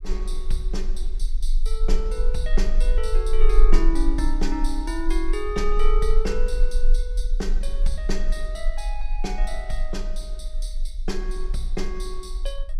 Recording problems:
low-frequency rumble; below 32 Hz, strongest tone 18 Hz, SNR -4 dB

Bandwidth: 15 kHz